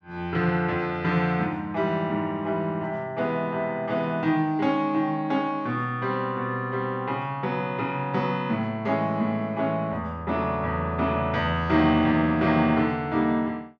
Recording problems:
none

